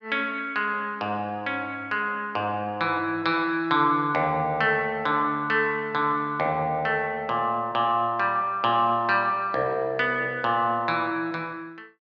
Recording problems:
none

